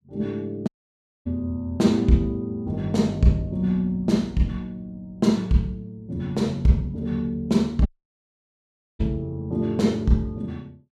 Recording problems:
audio cutting out; at 0.5 s for 0.5 s and at 8 s for 1 s

